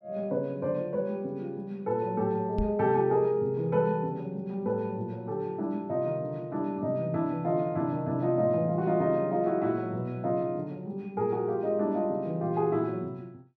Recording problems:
microphone thump; at 2.5 s; peak +2 dB vs average level

